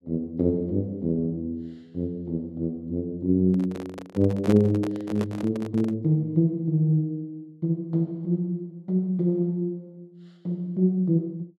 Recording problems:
microphone handling noise; from 3.5 to 6 s; peak -1 dB vs average level

